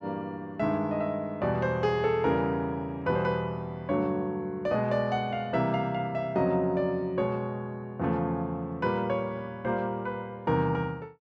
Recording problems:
none

